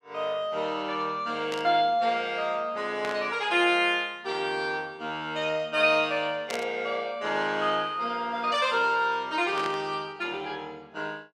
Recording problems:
static burst; 4 times, first at 1.5 s; peak -4 dB vs average level

